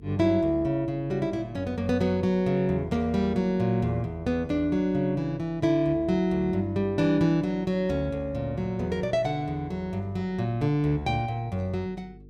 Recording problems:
electrical hum; 50 Hz, harmonics up to 450 Hz, SNR 23 dB

